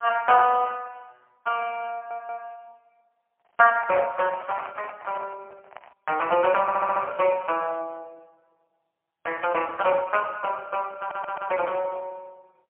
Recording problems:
phone line; 370 Hz to 3 kHz, AMR-NB, then MP3
stutter; at 2 s, at 6.5 s and at 11 s
microphone handling noise; from 3.5 to 6 s; peak -5 dB vs average level

